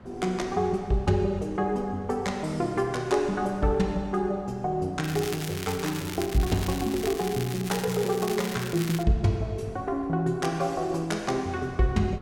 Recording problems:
wind noise; below 390 Hz, SNR 20 dB
crackling; from 5 to 9 s; loose cable, SNR 10 dB

